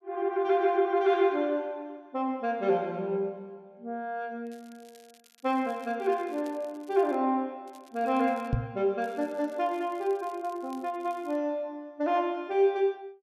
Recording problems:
crackling; from 4.5 to 7 s, at 7.5 s and from 9 to 11 s; loose cable, SNR 29 dB
microphone bump; at 8.5 s; peak +5 dB vs average level

